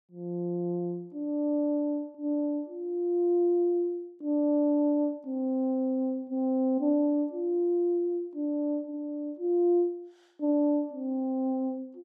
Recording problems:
none

